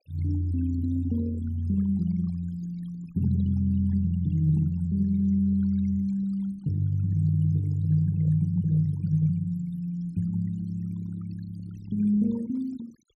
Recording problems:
noise reduction artefacts; signal-to-artefact ratio 22 dB

